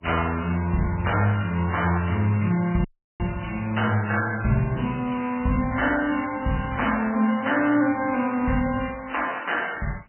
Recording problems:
lossy compression; MP3, log-spectral distance 6 dB, nothing above 2.9 kHz
audio cutting out; at 3 s

